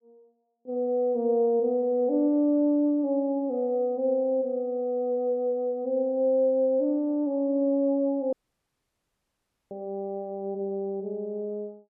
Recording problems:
audio cutting out; at 8.5 s for 1.5 s

